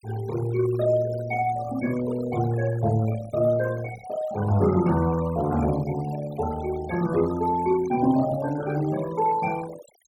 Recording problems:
noise reduction artefacts; signal-to-artefact ratio 17 dB

